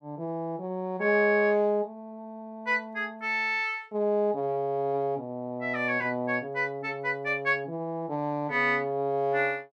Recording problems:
none

